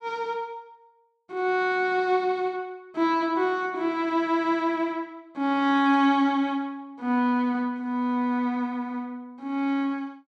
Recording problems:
none

